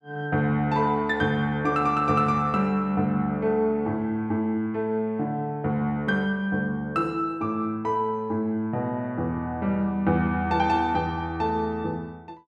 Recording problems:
none

